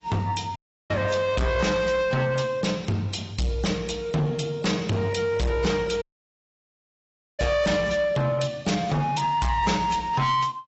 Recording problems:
lossy compression; AAC, log-spectral distance 3 dB, nothing above 7.8 kHz
distortion; soft clipping, signal-to-distortion ratio 7 dB
audio cutting out; at 0.5 s and at 6 s for 1.5 s

